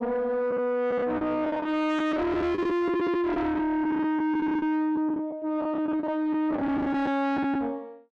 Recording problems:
distorted audio; soft clipping, signal-to-distortion ratio 6 dB
packet loss; 10% of the sound replaced, filled with the last packet

